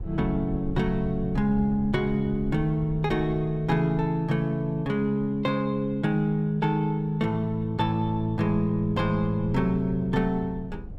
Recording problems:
low-frequency rumble; below 90 Hz, SNR 15 dB

